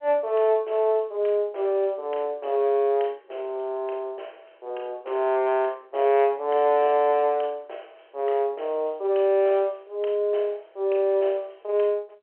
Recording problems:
telephone audio; 320 Hz to 3.2 kHz, G.711

